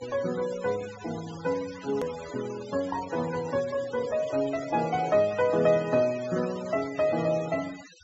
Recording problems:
treble cut off; nothing above 8 kHz
noise reduction artefacts; signal-to-artefact ratio 16 dB
edit click; at 2 s

